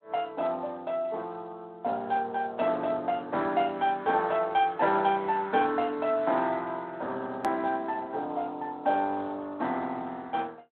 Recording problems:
phone line; 260 Hz to 4 kHz, Speex
edit click; at 7.5 s

